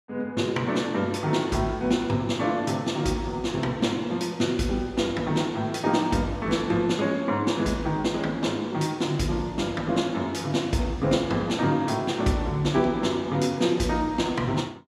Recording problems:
none

